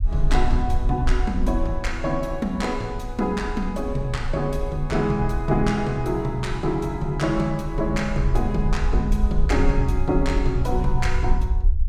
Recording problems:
low-frequency rumble; below 56 Hz, SNR 3 dB

